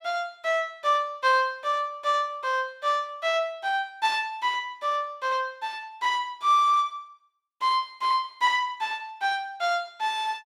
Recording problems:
none

